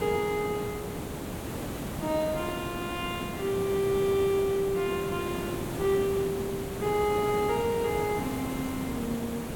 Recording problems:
background hiss; slope -7 dB per octave, SNR 6 dB

